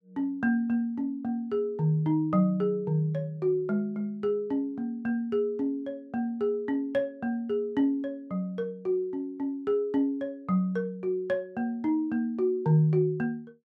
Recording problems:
none

